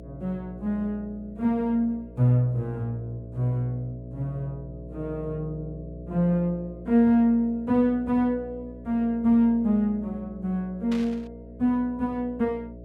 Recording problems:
hum; 60 Hz, harmonics up to 660 Hz, SNR 16 dB
burst of static; at 11 s; peak -10 dB vs average level

